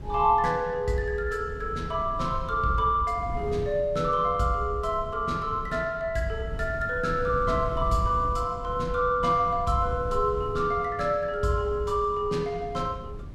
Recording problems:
wind on the microphone; below 130 Hz, SNR 12 dB

